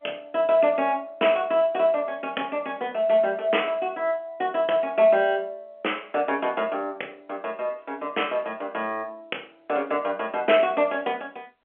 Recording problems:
telephone audio; 300 Hz to 3.3 kHz, G.711

